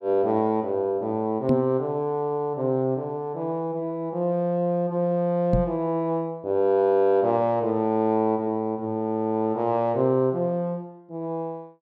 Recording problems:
microphone thump; at 1.5 s and at 5.5 s; peak +5 dB vs average level

